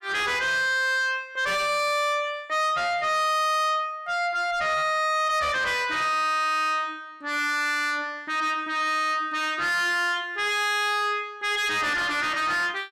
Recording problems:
distortion; soft clipping, signal-to-distortion ratio 7 dB

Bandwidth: 14.5 kHz